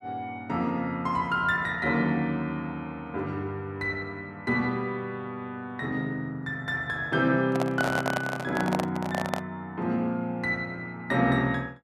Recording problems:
handling noise; from 7.5 to 9.5 s; peak +4 dB vs average level

